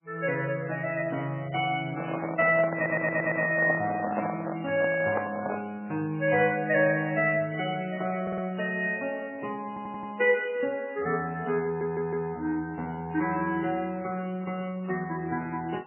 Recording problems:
lossy compression; MP3, log-spectral distance 3 dB, nothing above 3 kHz
handling noise; from 2 to 5.5 s; peak +3 dB vs average level
stutter; 4 times, first at 3 s

